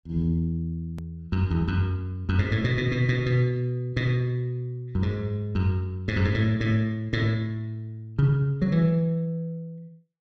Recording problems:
click at an edit; at 1 s

